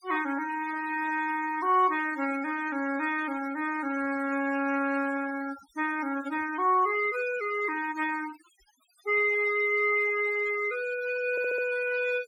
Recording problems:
noise reduction artefacts; signal-to-artefact ratio 17 dB
audio stuttering; at 11 s

